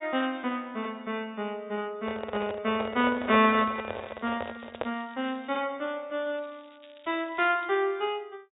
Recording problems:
low-pass filter; nothing above 4 kHz
handling noise; from 2 to 5 s; peak +1 dB vs average level
crackle; from 4 to 5.5 s and from 6.5 to 7.5 s; loose cable, SNR 27 dB

